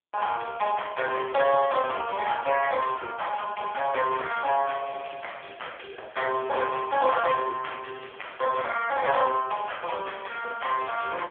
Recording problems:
phone line; 340 Hz to 3.3 kHz, AMR-NB

